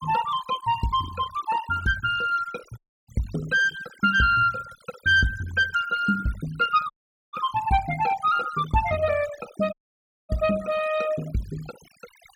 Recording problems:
denoising artefacts; signal-to-artefact ratio 17 dB
audio cutting out; at 3 s, at 7 s and at 9.5 s for 0.5 s

